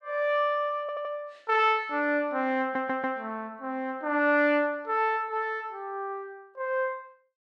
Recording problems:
audio stuttering; at 1 s and at 2.5 s

